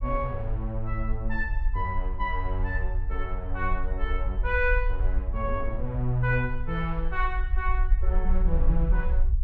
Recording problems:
low-frequency rumble; below 50 Hz, SNR 0 dB

